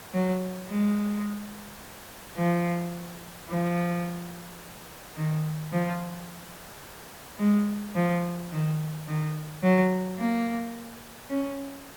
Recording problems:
hiss; slope -3 dB per octave, SNR 15 dB

